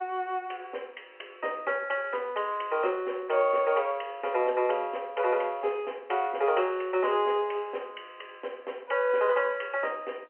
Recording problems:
phone line; 320 Hz to 3.1 kHz, G.711

